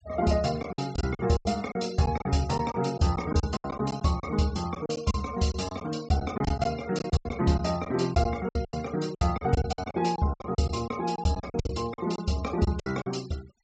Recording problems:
treble missing; nothing above 8 kHz
noise reduction artefacts; signal-to-artefact ratio 20 dB
lost packets; 14% of the sound replaced, filled with silence

